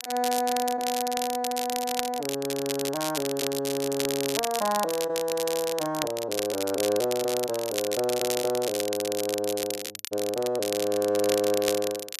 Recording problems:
crackle; vinyl, SNR 5 dB

